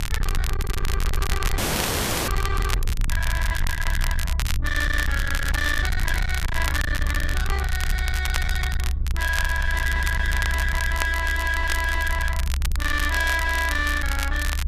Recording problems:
distortion; hard clipping, signal-to-distortion ratio 7 dB
low-frequency rumble; below 70 Hz, SNR 1 dB
crackle; vinyl, SNR 7 dB
audio freezing; at 1.5 s for 0.5 s

